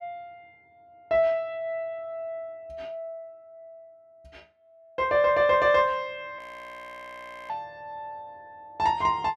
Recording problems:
frozen audio; at 6.5 s for 1 s

